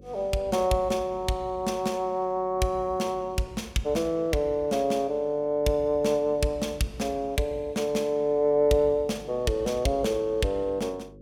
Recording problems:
hum; 50 Hz, harmonics up to 550 Hz, SNR 25 dB

